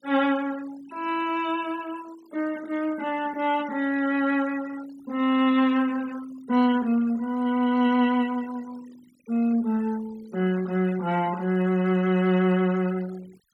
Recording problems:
noise reduction artefacts; signal-to-artefact ratio 22 dB

